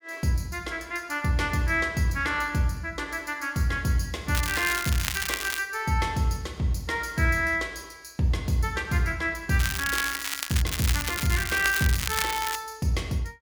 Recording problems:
crackle; from 4.5 to 5.5 s, from 9.5 to 11 s and from 11 to 13 s; loose cable, SNR 3 dB

